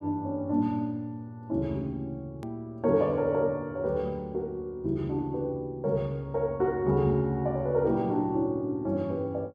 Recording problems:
hard cut with a click; at 2.5 s

